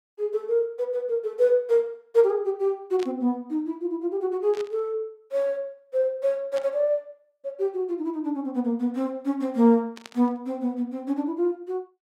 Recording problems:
static burst; 4 times, first at 3 s; peak -10 dB vs average level

